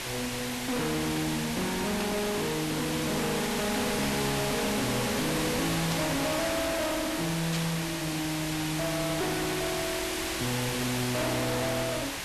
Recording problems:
distortion; soft clipping, signal-to-distortion ratio 6 dB
background hiss; slope -1 dB per octave, SNR 1 dB
static burst; at 2 s, at 6 s and at 7.5 s; peak 0 dB vs average level

